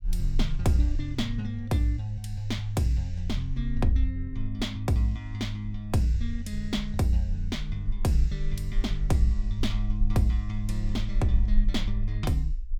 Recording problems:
rumble; below 42 Hz, SNR 5 dB

